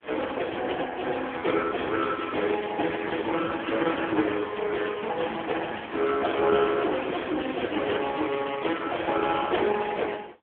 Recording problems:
phone line; 240 Hz to 3.3 kHz, AMR-NB
crackle; from 3 to 7.5 s; loose cable, SNR 24 dB

